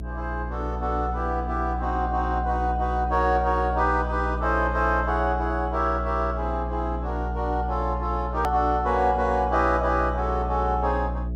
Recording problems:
electrical hum; 60 Hz, harmonics up to 660 Hz, SNR 6 dB
edit click; at 8.5 s

